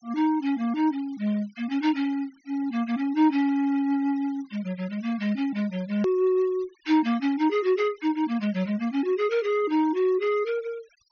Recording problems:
treble missing; nothing above 6.5 kHz
denoising artefacts; signal-to-artefact ratio 24 dB
hard cut with a click; at 6 s

